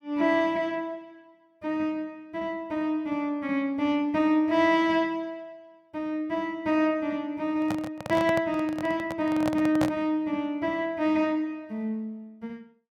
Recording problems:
microphone handling noise; from 7.5 to 10 s; peak +2 dB vs average level

